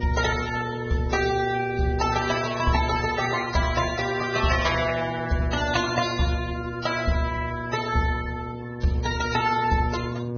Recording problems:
lossy compression; Vorbis, then Vorbis, log-spectral distance 4 dB, nothing above 6.5 kHz
electrical hum; 60 Hz, harmonics up to 1.1 kHz, SNR 9 dB

